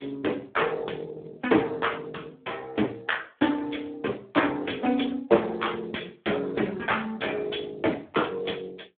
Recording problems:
telephone audio; 240 Hz to 3.6 kHz, Speex

